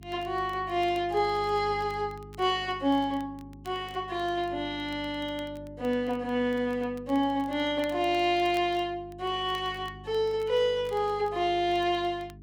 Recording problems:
mains hum; 50 Hz, harmonics up to 400 Hz, SNR 19 dB
crackle; vinyl, SNR 28 dB

